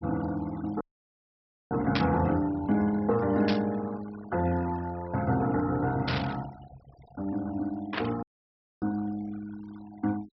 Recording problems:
treble cut off; nothing above 5.6 kHz
noise reduction artefacts; signal-to-artefact ratio 19 dB
dropout; at 1 s for 1 s and at 8 s for 0.5 s
static burst; 4 times, first at 2 s; peak +4 dB vs average level

